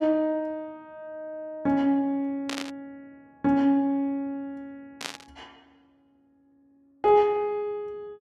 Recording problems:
burst of static; at 2.5 s and at 5 s; peak -2 dB vs average level

